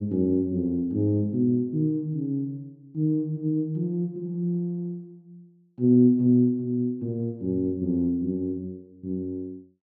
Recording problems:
none

